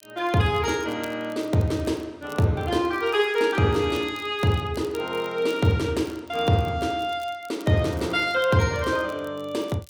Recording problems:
crackle; vinyl, SNR 26 dB

